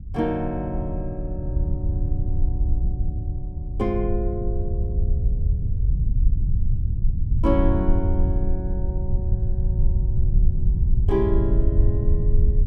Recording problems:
low-frequency rumble; below 82 Hz, SNR -4 dB

